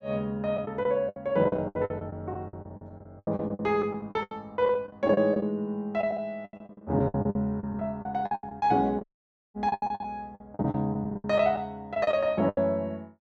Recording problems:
packet loss; 18% of the sound replaced, filled with the last packet
dropout; at 9 s for 0.5 s

